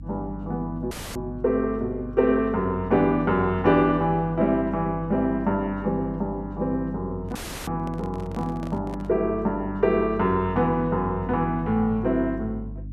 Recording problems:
hum; 50 Hz, harmonics up to 300 Hz, SNR 14 dB
audio cutting out; at 1 s and at 7.5 s
handling noise; from 7.5 to 9 s; peak -11 dB vs average level

